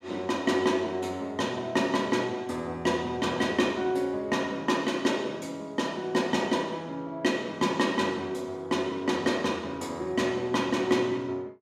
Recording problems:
none

